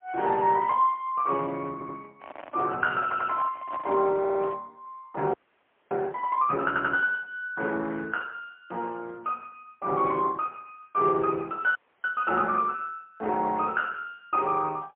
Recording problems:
phone line; 260 Hz to 2.8 kHz, AMR-NB, then MP3
audio stuttering; 4 times, first at 1.5 s
handling noise; from 2 to 4.5 s; peak -6 dB vs average level
audio freezing; at 5.5 s for 0.5 s and at 12 s

